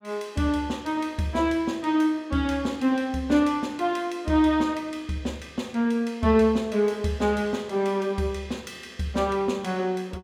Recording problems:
none

